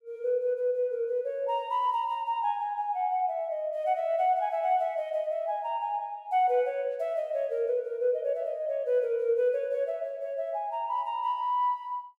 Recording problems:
none

